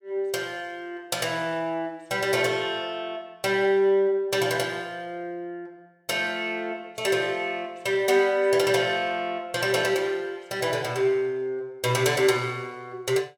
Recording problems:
none

